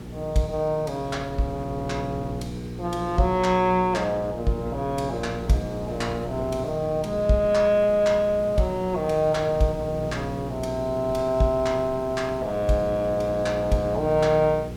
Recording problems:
hum; 60 Hz, harmonics up to 480 Hz, SNR 11 dB
hiss; slope -2 dB per octave, SNR 26 dB
wind noise; below 430 Hz, SNR 18 dB

